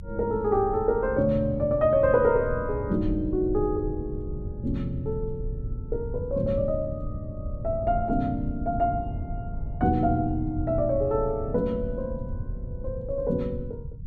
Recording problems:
rumble; below 110 Hz, SNR 10 dB

